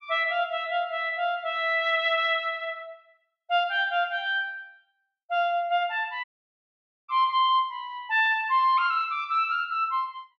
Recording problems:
dropout; at 6 s for 1 s

